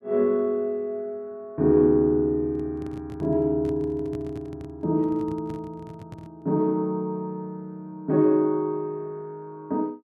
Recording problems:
handling noise; from 2.5 to 6.5 s; peak -9 dB vs average level

